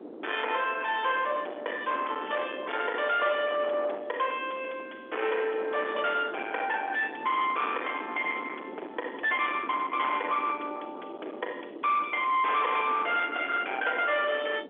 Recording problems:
phone line; 260 Hz to 3.5 kHz, G.711
distortion; soft clipping, signal-to-distortion ratio 8 dB
wind on the microphone; below 1.8 kHz, SNR 12 dB

